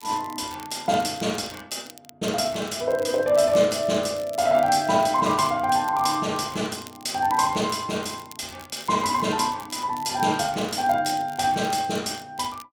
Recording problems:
crackle; vinyl, SNR 22 dB

